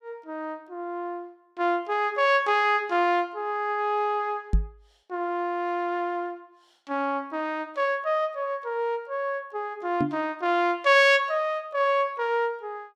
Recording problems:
microphone thump; at 4.5 s and at 10 s; peak +5 dB vs average level

